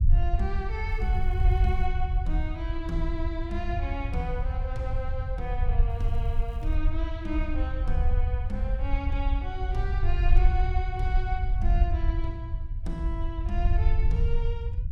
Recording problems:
low-frequency rumble; below 68 Hz, SNR -7 dB
crackle; at 1 s and at 6 s; loose cable, SNR 30 dB

